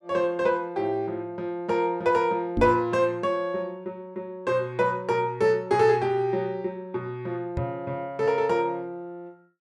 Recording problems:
microphone bump; at 2.5 s and at 7.5 s; peak +2 dB vs average level

